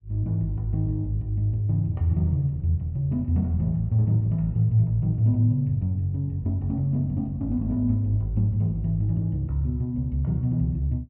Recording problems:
none

